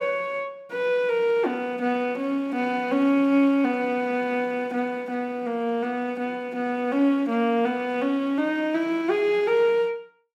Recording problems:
none

